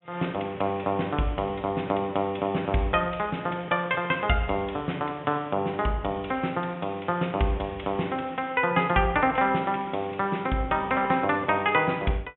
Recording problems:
low-pass filter; nothing above 3.6 kHz

